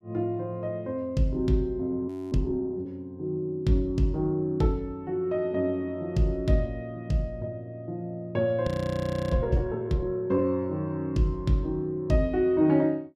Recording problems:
frozen audio; at 2 s and at 8.5 s for 0.5 s

